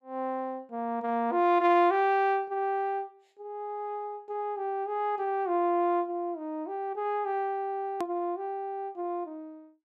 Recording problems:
hard cut with a click; at 8 s

